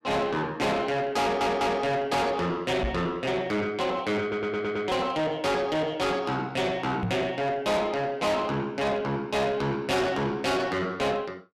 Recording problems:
distortion; soft clipping, signal-to-distortion ratio 6 dB
audio stuttering; at 1 s and at 4 s
knock on the microphone; at 3 s and at 7 s; peak +1 dB vs average level

